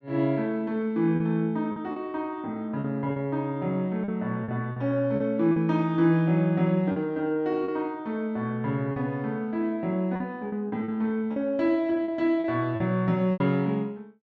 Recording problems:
packet loss; 7% of the sound replaced, filled with repeated pitch periods

